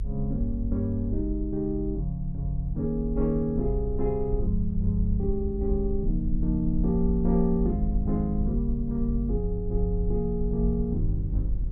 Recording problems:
rumble; below 52 Hz, SNR 4 dB

